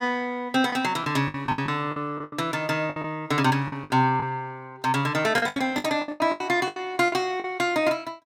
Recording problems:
lost packets; 13% of the sound replaced, filled with the last packet

